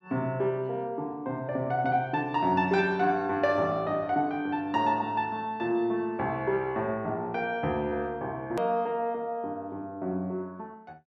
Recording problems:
click at an edit; at 8.5 s

